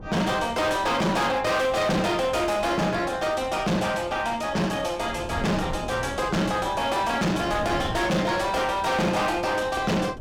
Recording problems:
distortion; hard clipping, uneven, signal-to-distortion ratio 6 dB
wind on the microphone; below 440 Hz, SNR 15 dB

